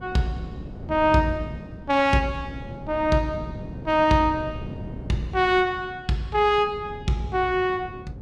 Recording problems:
wind on the microphone; below 260 Hz, SNR 15 dB

